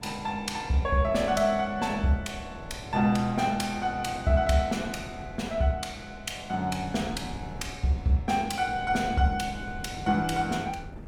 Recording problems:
wind on the microphone; below 230 Hz, SNR 16 dB

